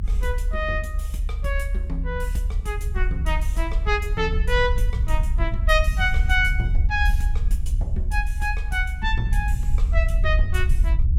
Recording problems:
rumble; below 66 Hz, SNR -2 dB

